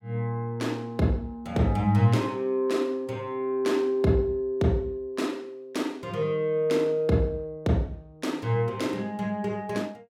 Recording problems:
none

